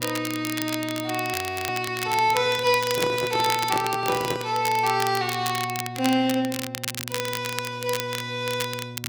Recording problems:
hum; 60 Hz, harmonics up to 720 Hz, SNR 14 dB
crackle; vinyl, SNR 8 dB
audio freezing; at 1.5 s
handling noise; from 3 to 4.5 s; peak -1 dB vs average level

